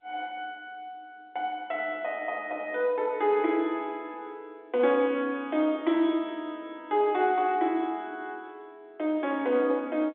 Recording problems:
phone line; 240 Hz to 3.7 kHz, G.711

